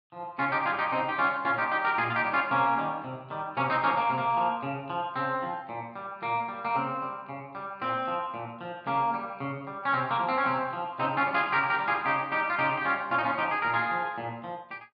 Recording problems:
low-pass filter; nothing above 5.5 kHz

